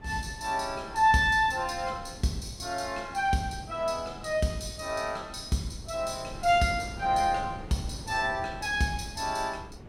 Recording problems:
wind noise; below 340 Hz, SNR 16 dB

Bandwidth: 16.5 kHz